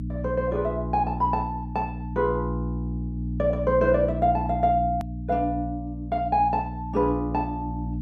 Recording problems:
hum; 60 Hz, harmonics up to 300 Hz, SNR 6 dB
hard cut with a click; at 5 s

